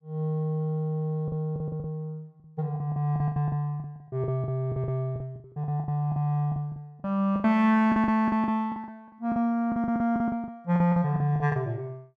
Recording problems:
packet loss; 17% of the sound replaced, filled with the last packet

